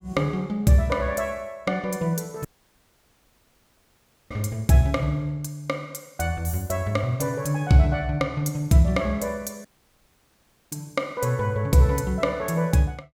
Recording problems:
audio cutting out; at 2.5 s for 2 s and at 9.5 s for 1 s

